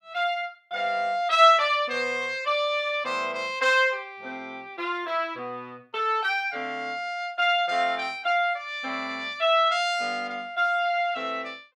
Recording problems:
none

